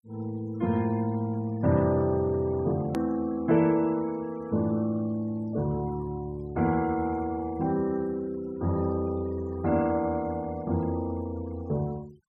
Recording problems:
noise reduction artefacts; signal-to-artefact ratio 25 dB
hard cut with a click; at 3 s

